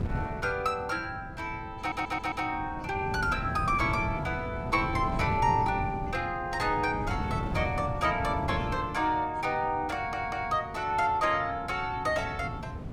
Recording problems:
wind noise; below 230 Hz, SNR 8 dB
audio stuttering; at 2 s and at 10 s

